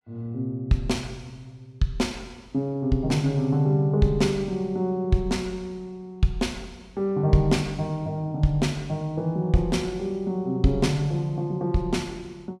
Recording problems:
none

